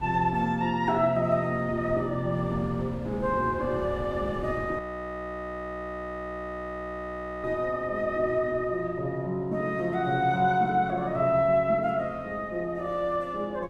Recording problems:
wind noise; below 310 Hz, SNR 16 dB
frozen audio; at 5 s for 2.5 s

